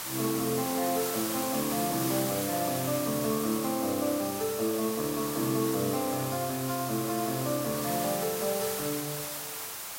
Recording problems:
hiss; SNR 3 dB

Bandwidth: 16 kHz